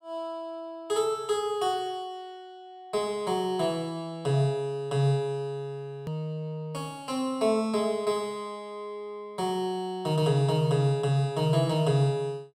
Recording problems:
hard cut with a click; at 6 s

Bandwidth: 16 kHz